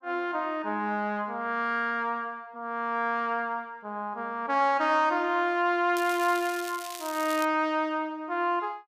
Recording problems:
crackle; from 6 to 7.5 s; loose cable, SNR 13 dB

